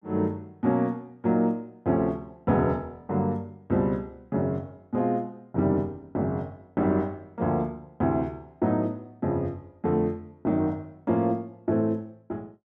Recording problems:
none

